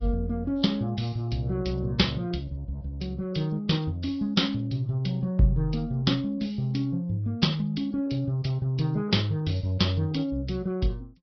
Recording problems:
treble cut off; nothing above 5.5 kHz
lossy compression; AAC, log-spectral distance 2 dB

